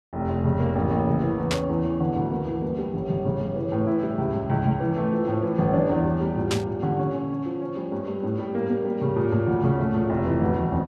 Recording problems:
burst of static; at 1.5 s and at 6.5 s; peak +1 dB vs average level

